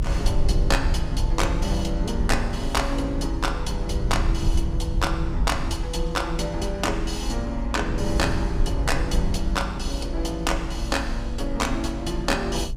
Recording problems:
rumble; below 68 Hz, SNR 1 dB

